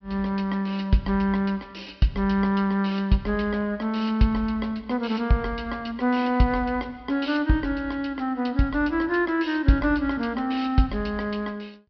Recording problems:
treble missing; nothing above 5.5 kHz

